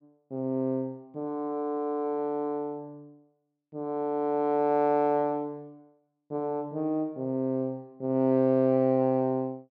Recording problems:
none

